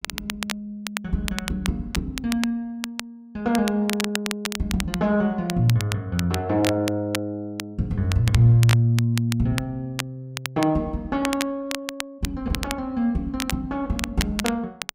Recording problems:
crackling; vinyl, SNR 8 dB

